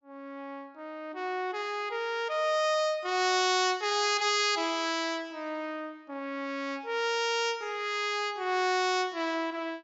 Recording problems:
treble cut off; nothing above 7.5 kHz

